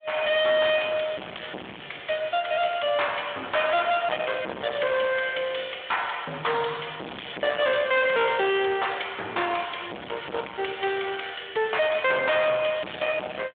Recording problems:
telephone audio; 280 Hz to 3.6 kHz, Speex
distortion; hard clipping, uneven, signal-to-distortion ratio 3 dB

